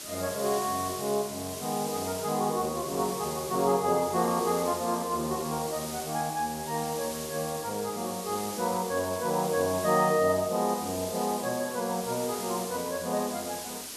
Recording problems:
background hiss; SNR 8 dB

